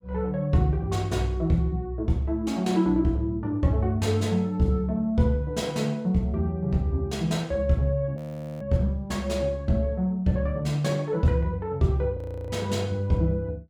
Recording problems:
frozen audio; at 8 s and at 12 s

